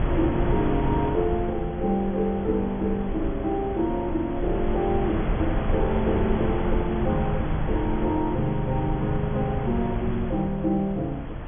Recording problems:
treble cut off; nothing above 3.4 kHz
wind noise; below 260 Hz, SNR 4 dB

